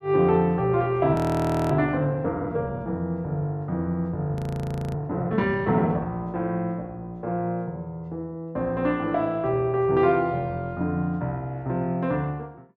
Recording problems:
frozen audio; at 1 s for 0.5 s and at 4.5 s for 0.5 s

